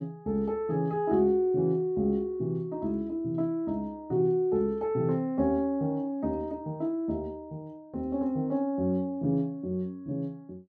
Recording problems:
none

